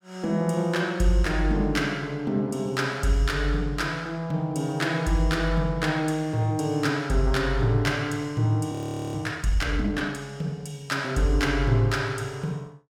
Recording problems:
audio freezing; at 8.5 s

